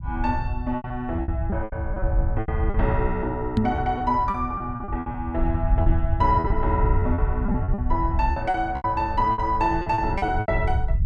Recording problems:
rumble; below 88 Hz, SNR 2 dB
packet loss; 13% of the sound replaced, filled with repeated pitch periods
microphone thump; at 3.5 s; peak +8 dB vs average level

